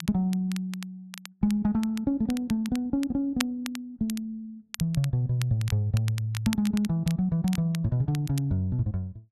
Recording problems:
crackling; vinyl, SNR 14 dB

